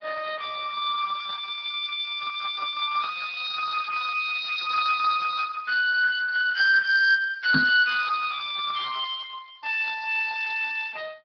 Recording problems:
treble cut off; nothing above 5 kHz
lossy compression; Speex, log-spectral distance 5 dB
microphone bump; at 7.5 s; peak +4 dB vs average level

